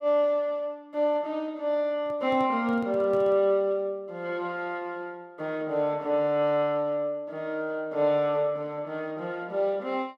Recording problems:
microphone handling noise; from 2 to 3.5 s; peak -12 dB vs average level

